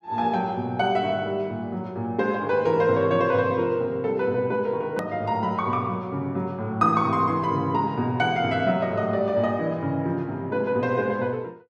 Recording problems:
hard cut with a click; at 5 s

